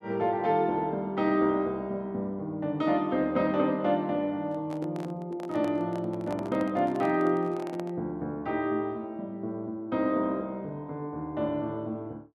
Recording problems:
microphone handling noise; from 4.5 to 8 s; peak -7 dB vs average level

